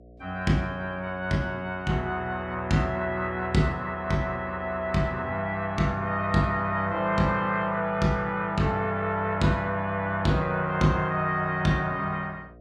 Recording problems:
hum; 60 Hz, harmonics up to 720 Hz, SNR 24 dB

